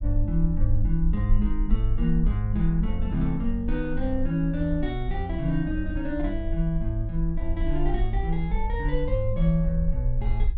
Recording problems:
rumble; below 48 Hz, SNR 3 dB

